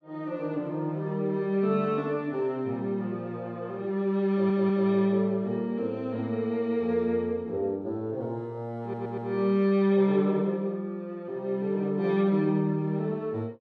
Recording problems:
audio stuttering; at 4.5 s and at 9 s

